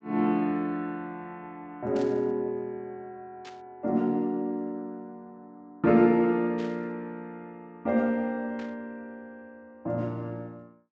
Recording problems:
low-pass filter; nothing above 8 kHz
burst of static; 4 times, first at 2 s; peak -14 dB vs average level

